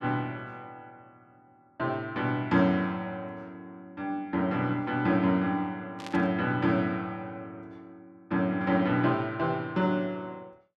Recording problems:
burst of static; at 6 s; peak -8 dB vs average level

